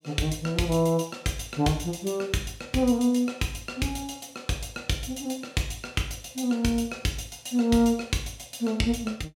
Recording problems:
none

